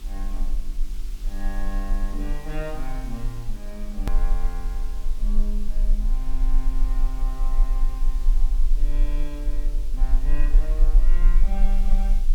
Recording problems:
electrical hum; 50 Hz, harmonics up to 400 Hz, SNR 14 dB
background hiss; slope 0 dB per octave, SNR 11 dB
low-frequency rumble; below 34 Hz, strongest tone 24 Hz, SNR -12 dB
hard cut with a click; at 4 s

